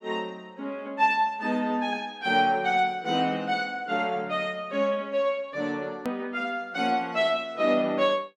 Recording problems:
click at an edit; at 6 s

